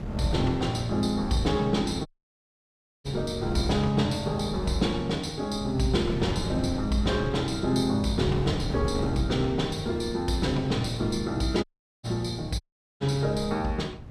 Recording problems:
wind noise; below 210 Hz, SNR 8 dB
audio cutting out; at 2 s for 1 s, at 12 s and at 13 s

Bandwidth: 14.5 kHz